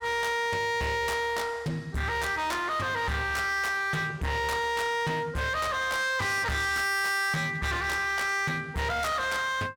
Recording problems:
distorted audio; hard clipping, signal-to-distortion ratio 6 dB

